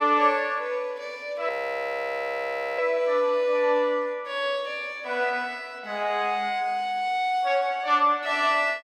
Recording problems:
frozen audio; at 1.5 s for 1.5 s

